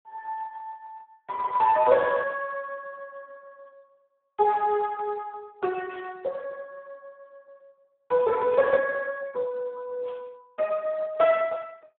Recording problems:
telephone audio; 370 Hz to 3.5 kHz, Speex
burst of static; 4 times, first at 4.5 s; peak -16 dB vs average level

